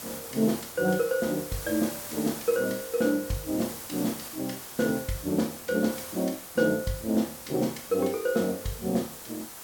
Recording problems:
background hiss; slope -2 dB per octave, SNR 10 dB

